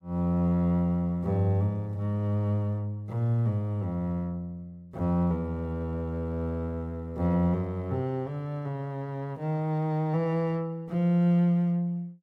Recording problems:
none

